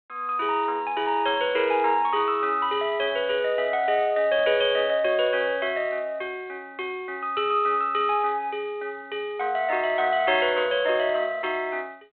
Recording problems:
phone line; 320 Hz to 3.7 kHz, G.726

